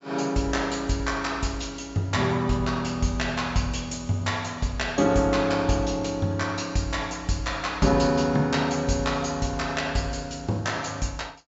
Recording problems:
treble missing; nothing above 8 kHz

